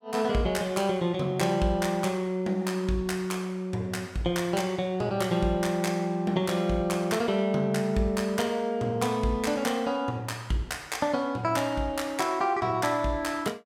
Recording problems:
none

